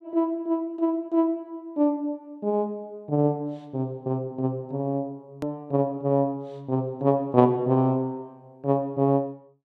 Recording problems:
click at an edit; at 5.5 s

